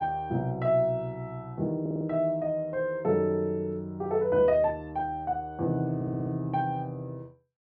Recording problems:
stutter; at 2 s and at 6 s

